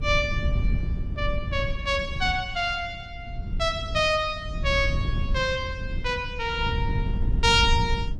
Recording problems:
wind noise; below 110 Hz, SNR 4 dB

